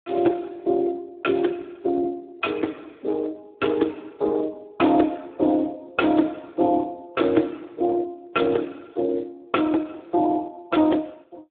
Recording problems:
telephone audio; 280 Hz to 3.8 kHz, Speex

